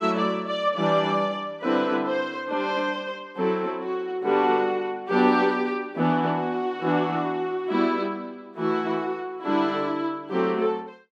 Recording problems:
none

